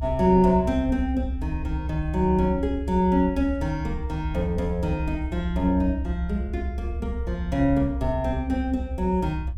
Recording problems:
low-frequency rumble; below 72 Hz, strongest tone 64 Hz, SNR 6 dB

